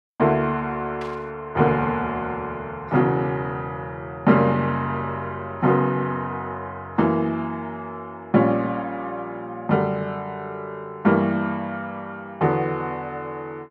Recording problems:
burst of static; at 1 s; peak -10 dB vs average level

